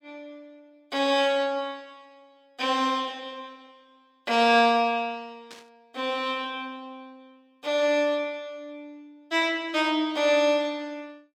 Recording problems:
static burst; at 5.5 s; peak -15 dB vs average level

